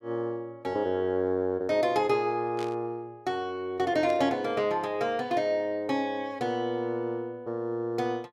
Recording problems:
burst of static; at 2.5 s and at 4 s; peak -10 dB vs average level

